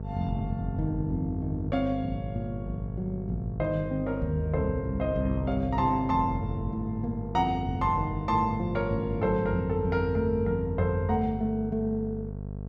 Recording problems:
hum; 50 Hz, harmonics up to 700 Hz, SNR 7 dB

